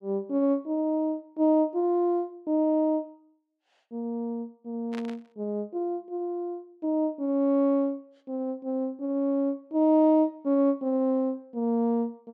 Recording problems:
burst of static; at 5 s; peak -11 dB vs average level

